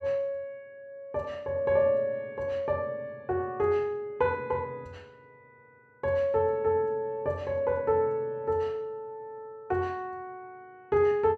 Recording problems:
none

